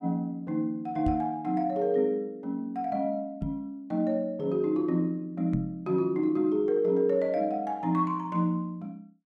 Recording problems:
microphone thump; at 1 s, at 3.5 s and at 5.5 s; peak +1 dB vs average level

